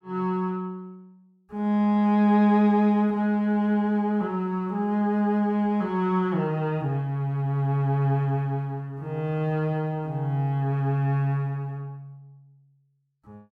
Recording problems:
none

